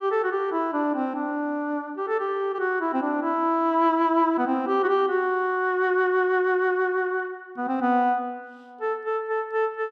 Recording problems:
none

